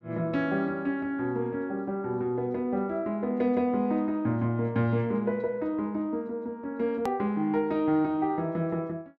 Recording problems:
click at an edit; at 7 s

